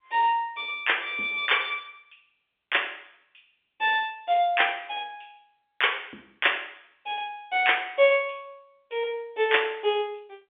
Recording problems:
phone line; 280 Hz to 3.6 kHz, G.711

